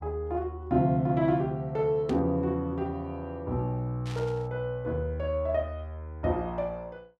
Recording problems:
burst of static; at 2 s and at 4 s; peak -10 dB vs average level

